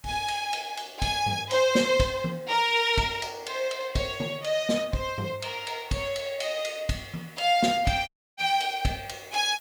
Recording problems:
hiss; SNR 27 dB
dropout; at 8 s

